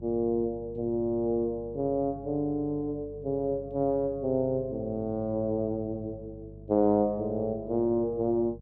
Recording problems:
hum; 50 Hz, harmonics up to 400 Hz, SNR 18 dB

